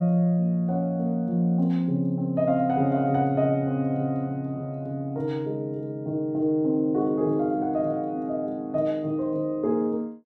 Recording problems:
none

